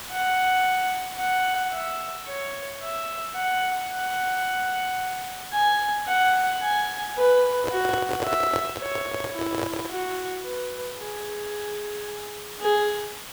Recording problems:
hiss; slope 0 dB per octave, SNR 11 dB
microphone handling noise; from 7.5 to 10 s; peak +2 dB vs average level

